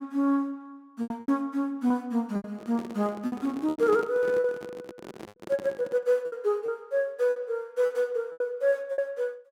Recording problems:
lost packets; 9% of the sound replaced, filled with repeated pitch periods
handling noise; from 2.5 to 6 s; peak -4 dB vs average level

